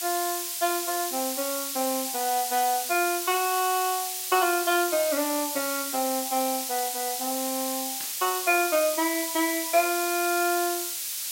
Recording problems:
hiss; slope +5 dB per octave, SNR 2 dB
burst of static; at 8 s; peak -9 dB vs average level

